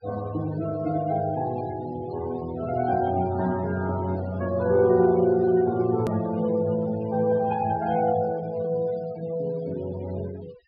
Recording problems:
treble cut off; nothing above 5.2 kHz
denoising artefacts; signal-to-artefact ratio 19 dB
hard cut with a click; at 6 s

